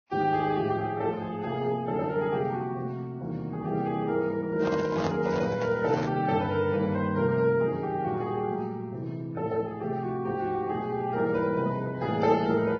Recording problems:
codec artefacts; Vorbis, then AAC, log-spectral distance 2 dB, nothing above 5.5 kHz
microphone handling noise; from 4.5 to 6 s; peak -1 dB vs average level

